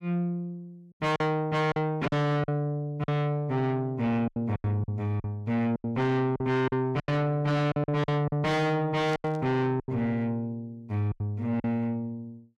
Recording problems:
distortion; soft clipping, signal-to-distortion ratio 6 dB
lost packets; 10% of the sound replaced, filled with silence
static burst; at 9 s; peak -13 dB vs average level

